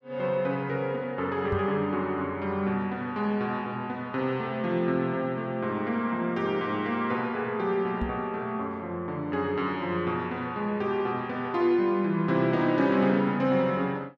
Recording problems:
knock on the microphone; at 1.5 s and at 8 s; peak -2 dB vs average level

